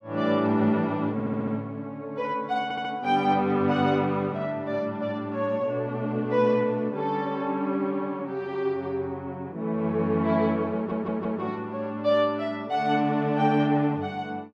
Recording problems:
audio stuttering; at 1 s, at 2.5 s and at 11 s

